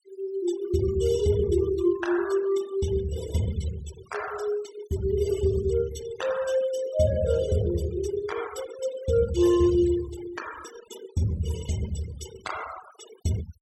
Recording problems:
noise reduction artefacts; signal-to-artefact ratio 14 dB

